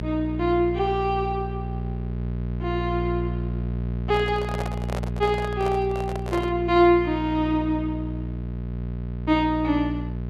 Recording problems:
hum; 60 Hz, harmonics up to 600 Hz, SNR 6 dB
microphone handling noise; from 4 to 6.5 s; peak -3 dB vs average level

